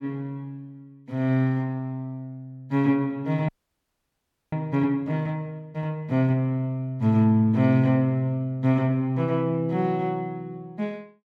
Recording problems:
frozen audio; at 3.5 s for 1 s

